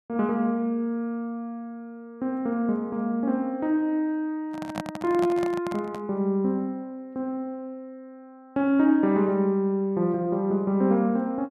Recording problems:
microphone handling noise; from 4.5 to 6 s; peak -3 dB vs average level

